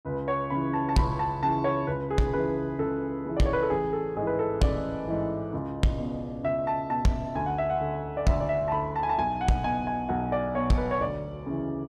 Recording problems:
distorted audio; soft clipping, signal-to-distortion ratio 11 dB

